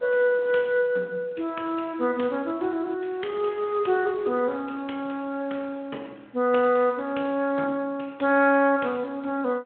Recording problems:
phone line; 190 Hz to 3.4 kHz, Speex
wind noise; below 1.4 kHz, SNR 24 dB

